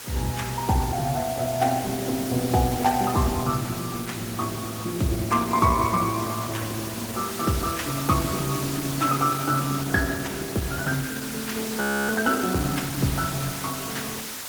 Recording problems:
lossy codec; Opus, log-spectral distance 8 dB
background hiss; slope 0 dB per octave, SNR 8 dB
audio freezing; at 12 s

